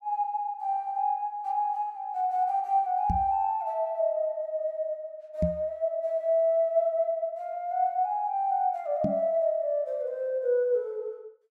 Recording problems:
microphone thump; at 3 s, at 5.5 s and at 9 s; peak +3 dB vs average level

